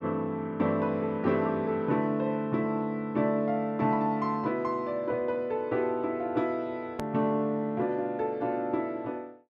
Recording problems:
edit click; at 7 s

